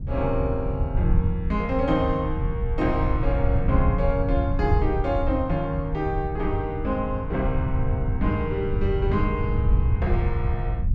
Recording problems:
wind on the microphone; below 96 Hz, SNR 0 dB

